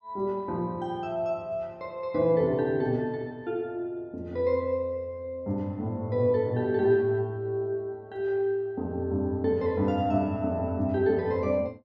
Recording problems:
none

